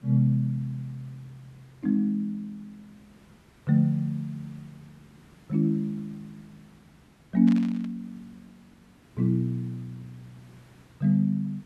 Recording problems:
hiss; slope -5 dB per octave, SNR 29 dB
static burst; at 7.5 s; peak -11 dB vs average level

